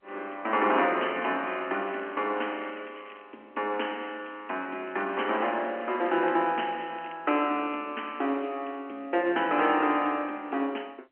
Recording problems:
phone line; 240 Hz to 3.1 kHz, G.711
crackle; from 1 to 3 s and from 5 to 7 s; loose cable, SNR 24 dB

